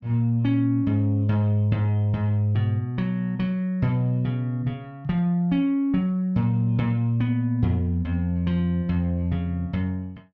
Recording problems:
none

